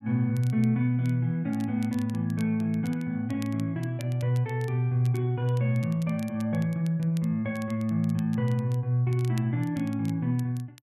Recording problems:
crackling; vinyl, SNR 25 dB

